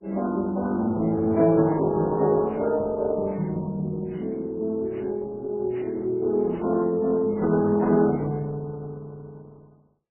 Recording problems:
codec artefacts; Opus, then MP3, log-spectral distance 2 dB

